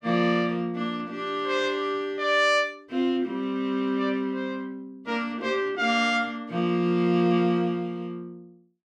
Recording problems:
none

